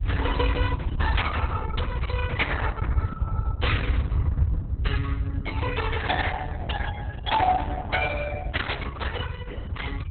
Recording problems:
codec artefacts; Opus, then Opus, log-spectral distance 3 dB, nothing above 4 kHz
low-frequency rumble; below 92 Hz, SNR -2 dB

